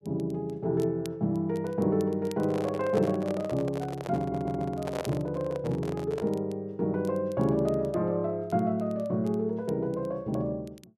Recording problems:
crackling; vinyl, SNR 26 dB
handling noise; from 2.5 to 6.5 s; peak -1 dB vs average level
audio stuttering; at 4 s

